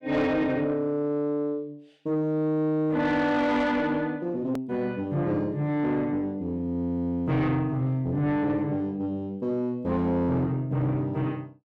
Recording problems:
distorted audio; soft clipping, signal-to-distortion ratio 12 dB
edit click; at 4.5 s

